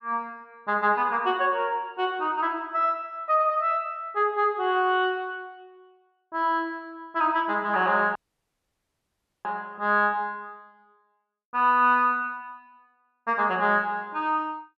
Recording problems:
dropout; at 8 s for 1.5 s

